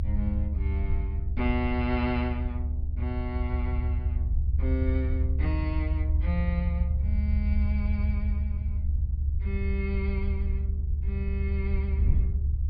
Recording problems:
treble missing; nothing above 5.5 kHz
low-frequency rumble; below 74 Hz, strongest tone 72 Hz, SNR -6 dB
wind on the microphone; below 78 Hz, SNR 5 dB

